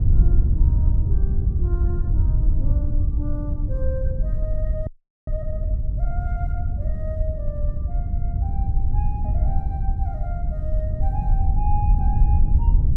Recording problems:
wind noise; below 78 Hz, SNR -14 dB
audio freezing; at 5 s

